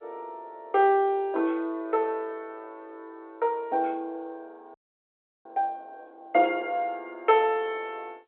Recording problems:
telephone audio; 320 Hz to 3.6 kHz, G.711
audio freezing; at 4.5 s for 0.5 s

